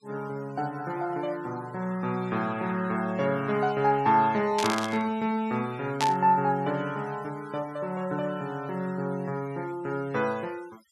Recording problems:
denoising artefacts; signal-to-artefact ratio 22 dB
burst of static; at 4.5 s and at 6 s; peak +2 dB vs average level

